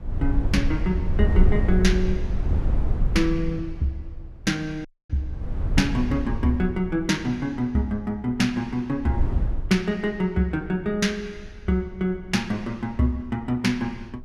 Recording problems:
wind noise; below 78 Hz, SNR 2 dB
audio cutting out; at 5 s

